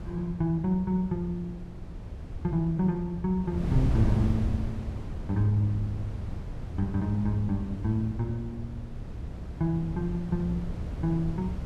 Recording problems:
wind noise; below 140 Hz, SNR 6 dB

